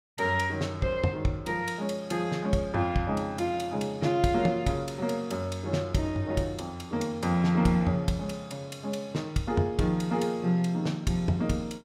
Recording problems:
none

